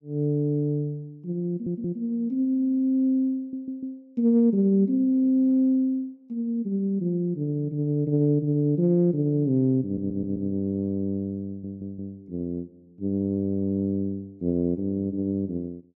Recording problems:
audio stuttering; 4 times, first at 1.5 s

